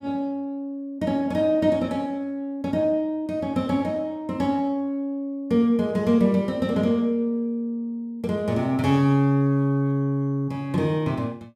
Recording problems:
none

